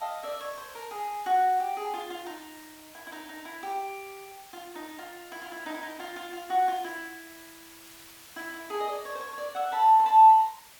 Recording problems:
hiss; slope +1 dB per octave, SNR 23 dB

